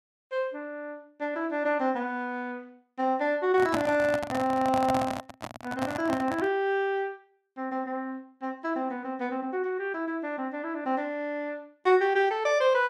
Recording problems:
microphone handling noise; from 3.5 to 6.5 s; peak +3 dB vs average level

